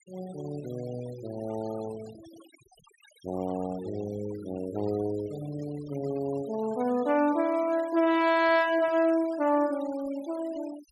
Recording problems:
noise reduction artefacts; signal-to-artefact ratio 20 dB

